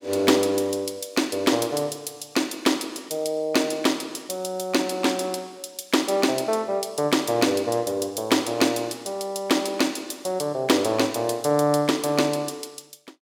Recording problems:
none

